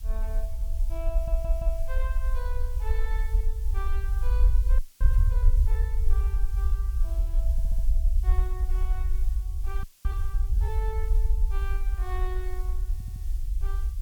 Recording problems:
background hiss; SNR 11 dB
low-frequency rumble; below 54 Hz, SNR -14 dB
audio stuttering; at 1 s, at 7.5 s and at 13 s
audio freezing; at 5 s and at 10 s
burst of static; at 5 s; peak -14 dB vs average level

